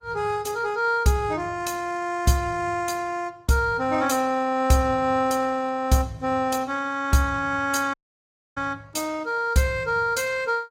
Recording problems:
lossy codec; Opus, log-spectral distance 3 dB, nothing above 16.5 kHz
audio cutting out; at 8 s for 0.5 s

